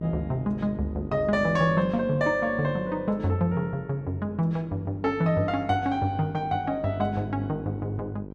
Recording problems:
hum; 50 Hz, harmonics up to 1 kHz, SNR 13 dB

